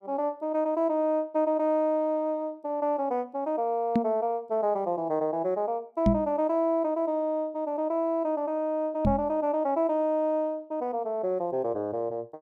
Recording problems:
microphone bump; at 4 s, at 6 s and at 9 s; peak +7 dB vs average level

